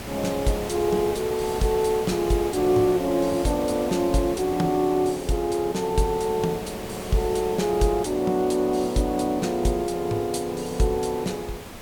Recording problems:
hiss; slope -5 dB per octave, SNR 12 dB

